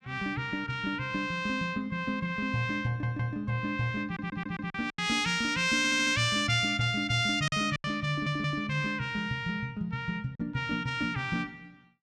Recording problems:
lost packets; 3% of the sound replaced, filled with silence
stutter; 4 times, first at 3 s

